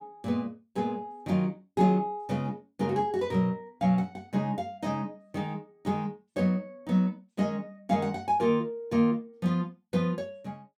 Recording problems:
none

